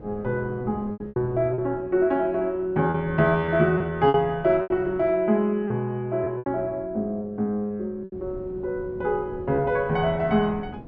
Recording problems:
wind noise; below 330 Hz, SNR 18 dB
lost packets; 7% of the sound replaced, filled with repeated pitch periods

